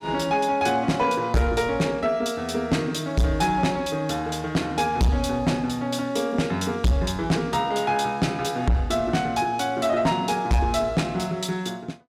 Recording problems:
distortion; soft clipping, signal-to-distortion ratio 7 dB

